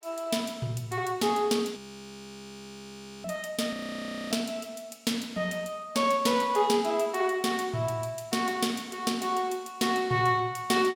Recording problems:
frozen audio; at 2 s for 1.5 s and at 3.5 s for 0.5 s

